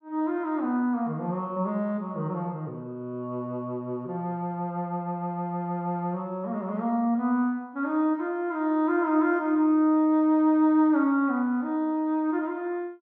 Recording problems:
none

